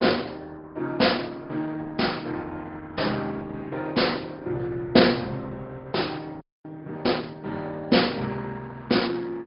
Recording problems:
treble missing; nothing above 5.2 kHz
lossy codec; Opus, log-spectral distance 4 dB
frozen audio; at 6.5 s

